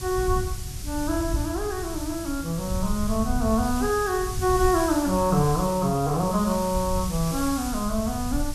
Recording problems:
background hiss; SNR 11 dB
wind on the microphone; below 94 Hz, SNR 9 dB

